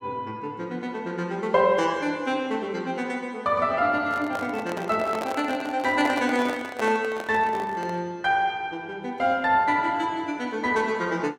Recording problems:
microphone handling noise; from 4 to 8 s; peak -2 dB vs average level

